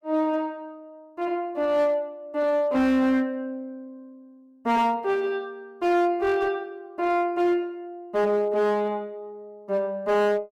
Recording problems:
distortion; hard clipping, uneven, signal-to-distortion ratio 11 dB

